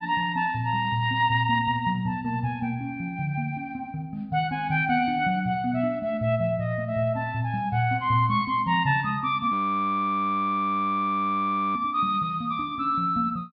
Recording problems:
treble cut off; nothing above 5.1 kHz
frozen audio; at 9.5 s for 2 s

